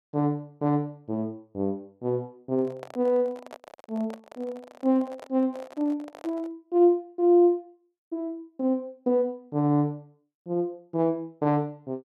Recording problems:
microphone handling noise; from 2.5 to 6.5 s; peak -10 dB vs average level

